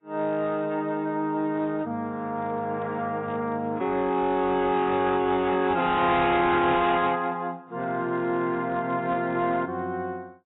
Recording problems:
codec artefacts; AAC, log-spectral distance 2 dB, nothing above 3.8 kHz
distorted audio; hard clipping, uneven, signal-to-distortion ratio 11 dB

